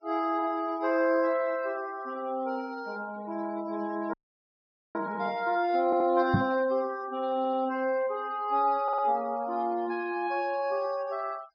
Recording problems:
low-pass filter; nothing above 5.5 kHz
denoising artefacts; signal-to-artefact ratio 24 dB
frozen audio; at 4 s for 1 s
stutter; at 6 s, at 7.5 s and at 9 s
microphone thump; at 6.5 s; peak +7 dB vs average level

